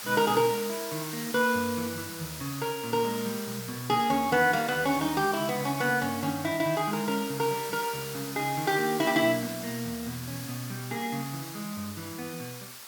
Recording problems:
background hiss; SNR 9 dB

